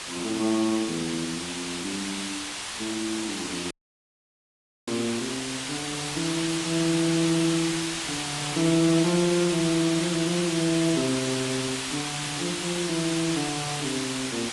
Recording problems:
lossy compression; AAC, log-spectral distance 13 dB
background hiss; slope 0 dB per octave, SNR 2 dB
audio cutting out; at 3.5 s for 1 s

